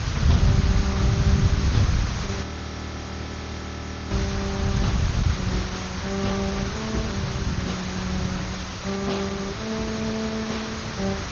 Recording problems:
lossy codec; MP2, then Opus, log-spectral distance 10 dB, nothing above 6.5 kHz
hum; 50 Hz, harmonics up to 600 Hz, SNR 26 dB
background hiss; SNR 2 dB
wind on the microphone; below 140 Hz, SNR -4 dB
audio freezing; at 2.5 s for 1.5 s

